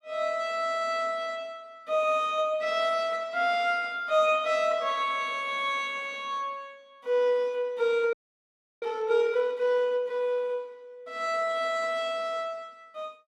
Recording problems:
audio freezing; at 8 s for 0.5 s

